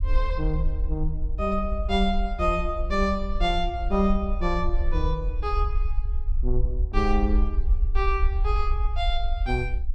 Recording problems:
low-frequency rumble; below 56 Hz, SNR 0 dB

